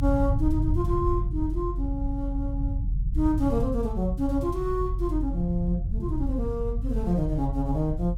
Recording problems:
low-frequency rumble; below 92 Hz, strongest tone 44 Hz, SNR 1 dB

